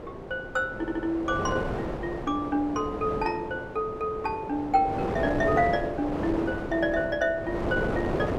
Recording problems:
wind noise; below 670 Hz, SNR 5 dB
stutter; at 1 s

